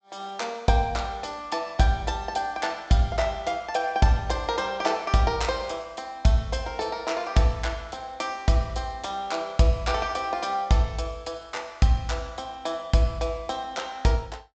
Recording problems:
low-pass filter; nothing above 8 kHz

